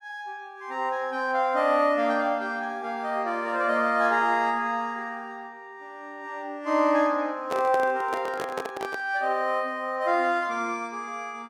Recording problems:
handling noise; from 7.5 to 9 s; peak -2 dB vs average level

